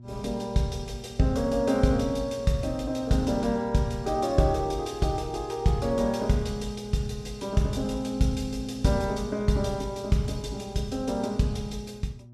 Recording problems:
electrical hum; 60 Hz, harmonics up to 600 Hz, SNR 18 dB

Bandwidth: 13 kHz